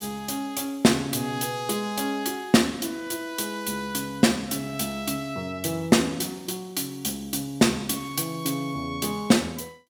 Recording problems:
none

